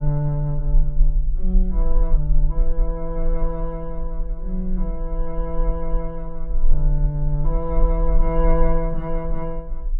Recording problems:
rumble; below 36 Hz, strongest tone 18 Hz, SNR -2 dB

